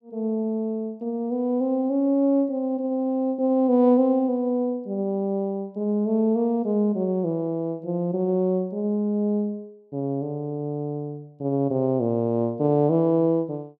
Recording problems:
none

